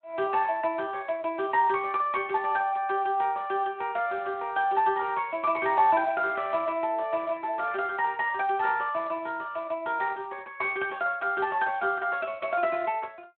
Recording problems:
telephone audio; 240 Hz to 3.3 kHz, Speex

